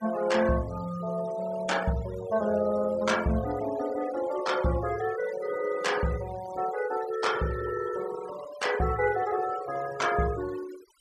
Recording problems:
denoising artefacts; signal-to-artefact ratio 15 dB

